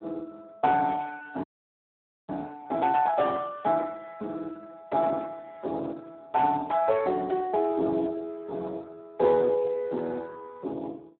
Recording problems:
phone line; 220 Hz to 2.2 kHz, Speex
audio freezing; at 1.5 s for 1 s

